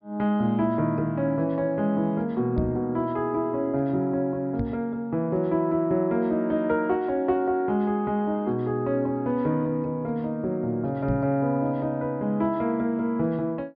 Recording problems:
treble missing; nothing above 5.5 kHz
microphone thump; at 2.5 s, at 4.5 s and at 11 s; peak 0 dB vs average level

